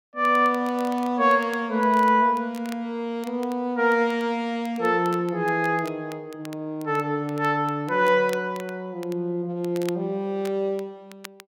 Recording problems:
crackle; vinyl, SNR 23 dB

